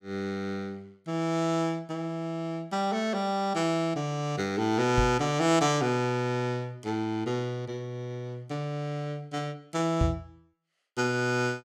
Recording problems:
microphone bump; at 5 s and at 10 s; peak +6 dB vs average level

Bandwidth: 17 kHz